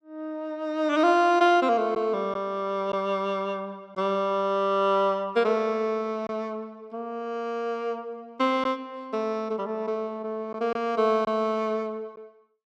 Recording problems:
packet loss; 1.1% of the sound replaced, filled with silence

